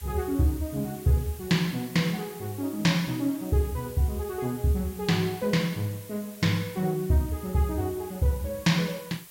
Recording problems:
hiss; slope 0 dB per octave, SNR 17 dB

